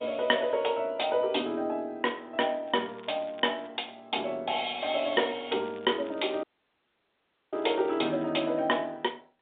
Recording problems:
telephone audio; 190 Hz to 3.7 kHz, G.711
crackle; from 2.5 to 3.5 s and from 5 to 8.5 s; loose cable, SNR 26 dB
audio cutting out; at 6.5 s for 1 s

